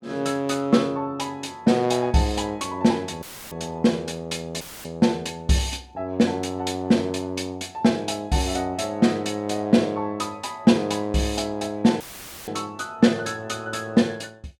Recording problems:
audio cutting out; at 3 s, at 4.5 s and at 12 s; filled with static

